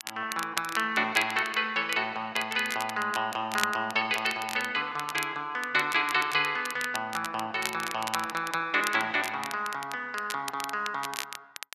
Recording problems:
crackle; vinyl, SNR 10 dB

